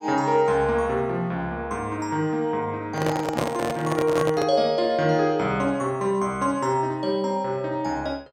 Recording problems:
microphone handling noise; from 3 to 4.5 s; peak +2 dB vs average level

